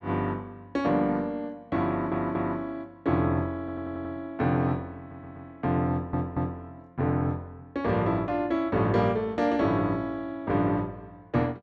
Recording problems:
stutter; 4 times, first at 2 s

